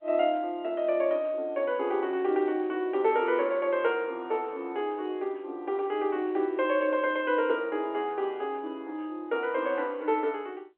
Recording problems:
phone line; 280 Hz to 3.3 kHz, G.711

